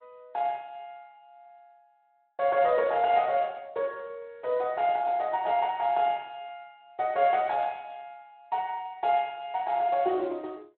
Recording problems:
telephone audio; 300 Hz to 3.8 kHz, Speex

